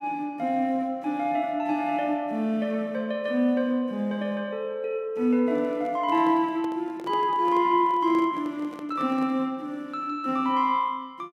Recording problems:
handling noise; from 5.5 to 9.5 s; peak -10 dB vs average level

